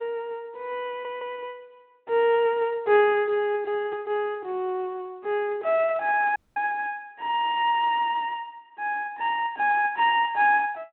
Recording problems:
telephone audio; 260 Hz to 3.2 kHz, Speex
stutter; at 1 s
dropout; at 6.5 s

